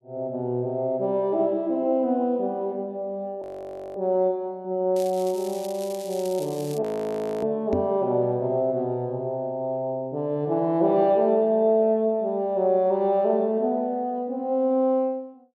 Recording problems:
audio freezing; at 3.5 s for 0.5 s and at 7 s for 0.5 s
crackle; from 5 to 7 s; loose cable, SNR 18 dB
microphone bump; at 7.5 s; peak 0 dB vs average level

